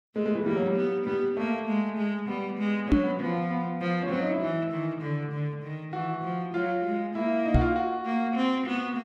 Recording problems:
microphone bump; at 3 s and at 7.5 s; peak +10 dB vs average level

